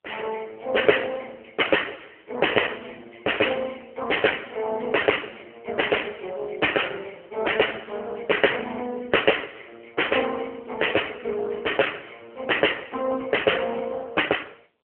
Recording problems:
telephone audio; 340 Hz to 3.1 kHz, AMR-NB

